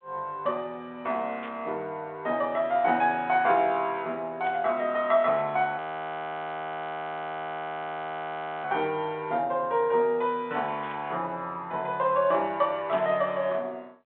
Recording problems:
telephone audio; 220 Hz to 3.6 kHz, G.726
static burst; 4 times, first at 1.5 s; peak -11 dB vs average level
audio freezing; at 6 s for 3 s

